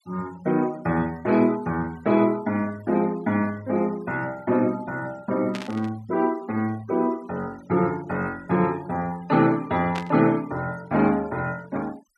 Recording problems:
denoising artefacts; signal-to-artefact ratio 23 dB
burst of static; at 5.5 s and at 10 s; peak -5 dB vs average level

